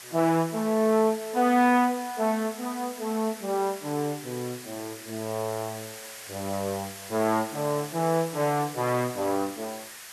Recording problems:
background hiss; SNR 13 dB

